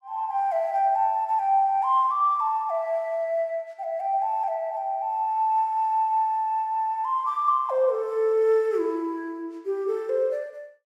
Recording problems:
none

